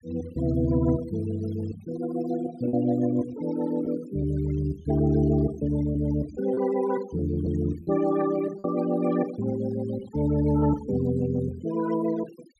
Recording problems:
denoising artefacts; signal-to-artefact ratio 20 dB
lost packets; 2% of the sound replaced, filled with repeated pitch periods

